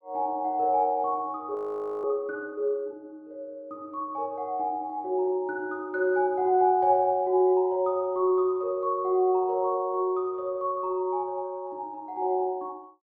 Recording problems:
audio freezing; at 1.5 s

